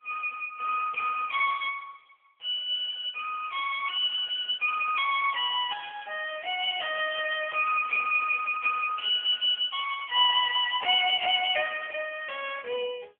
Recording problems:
telephone audio; 240 Hz to 3.3 kHz, AMR-NB

